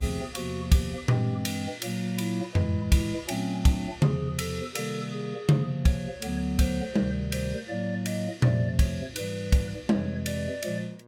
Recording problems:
electrical hum; 60 Hz, harmonics up to 1.7 kHz, SNR 29 dB

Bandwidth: 17 kHz